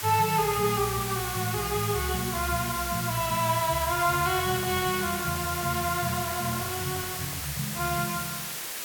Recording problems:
hiss; slope 0 dB per octave, SNR 4 dB
microphone handling noise; from 4 to 7.5 s; peak -11 dB vs average level

